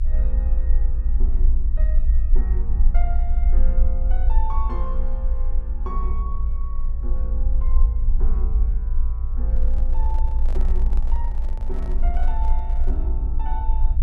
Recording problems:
low-frequency rumble; below 54 Hz, strongest tone 20 Hz, SNR -15 dB
microphone handling noise; from 9.5 to 13 s; peak +2 dB vs average level

